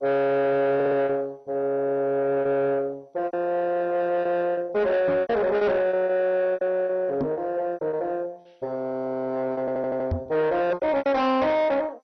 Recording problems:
lossy compression; MP2, log-spectral distance 2 dB, nothing above 5.8 kHz
distorted audio; soft clipping, signal-to-distortion ratio 11 dB
packet loss; 9% of the sound replaced, filled with repeated pitch periods
audio stuttering; at 1 s and at 9.5 s
microphone bump; at 5 s, at 7 s and at 10 s; peak +1 dB vs average level

